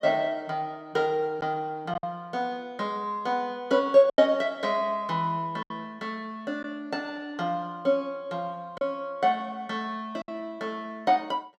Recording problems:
packet loss; 3% of the sound replaced, filled with silence

